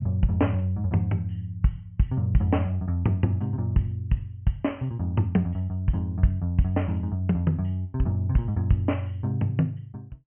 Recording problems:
low-pass filter; nothing above 3.1 kHz

